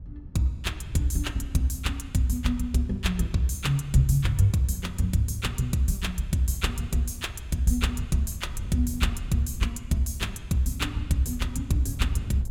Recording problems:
wind on the microphone; below 110 Hz, SNR 14 dB

